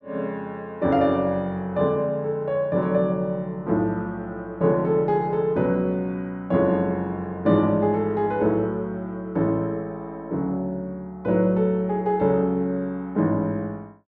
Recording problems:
none

